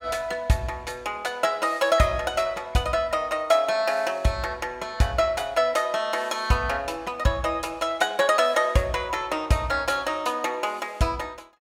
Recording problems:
none

